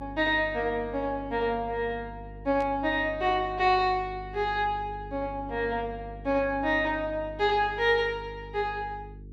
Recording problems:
hum; 50 Hz, harmonics up to 450 Hz, SNR 16 dB
burst of static; at 2.5 s; peak -15 dB vs average level

